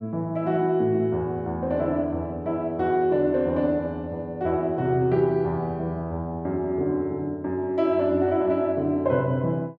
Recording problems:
none

